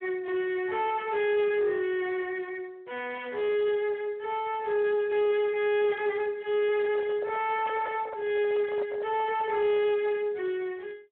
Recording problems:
phone line; 280 Hz to 3 kHz, Speex
distortion; soft clipping, signal-to-distortion ratio 9 dB
handling noise; from 6.5 to 10 s; peak -6 dB vs average level

